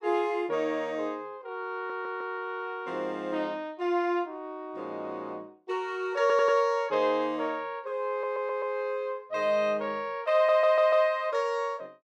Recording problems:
audio stuttering; 4 times, first at 2 s

